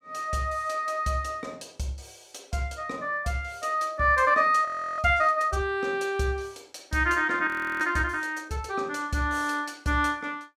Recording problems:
frozen audio; at 4.5 s and at 7.5 s

